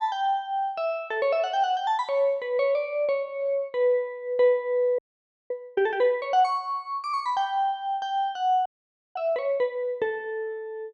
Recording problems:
audio freezing; at 5 s for 0.5 s and at 8.5 s

